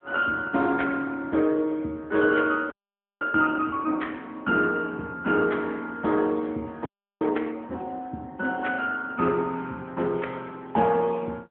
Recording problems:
phone line; 130 Hz to 4 kHz, AMR-NB
frozen audio; at 2.5 s for 0.5 s and at 7 s

